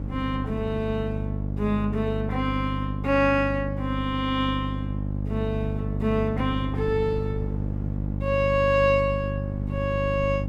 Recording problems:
hum; 50 Hz, harmonics up to 600 Hz, SNR 4 dB
wind noise; below 260 Hz, SNR 16 dB

